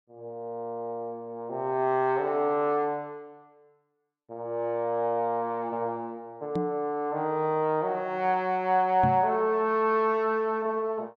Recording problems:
knock on the microphone; at 6.5 s and at 9 s; peak +1 dB vs average level

